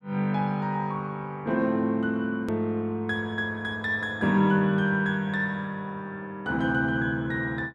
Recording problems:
click at an edit; at 2.5 s

